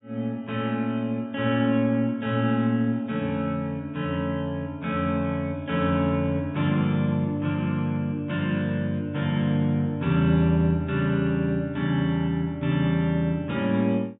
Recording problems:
treble missing; nothing above 4 kHz

